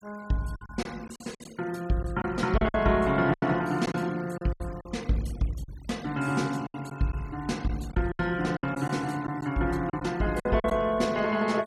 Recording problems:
denoising artefacts; signal-to-artefact ratio 22 dB
packet loss; 9% of the sound replaced, filled with silence

